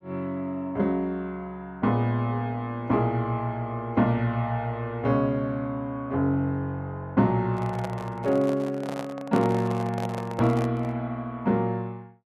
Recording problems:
microphone handling noise; from 7.5 to 11 s; peak -3 dB vs average level

